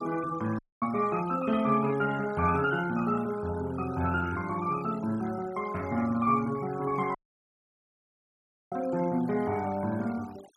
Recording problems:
denoising artefacts; signal-to-artefact ratio 19 dB
audio cutting out; at 0.5 s and at 7 s for 1.5 s

